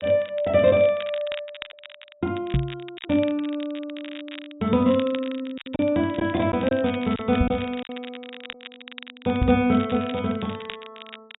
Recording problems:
treble missing; nothing above 4 kHz
crackling; vinyl, SNR 17 dB
packet loss; 3% of the sound replaced, filled with silence
knock on the microphone; at 2.5 s, at 7.5 s and at 9.5 s; peak +4 dB vs average level

